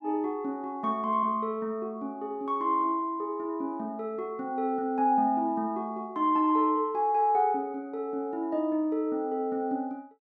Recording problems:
none

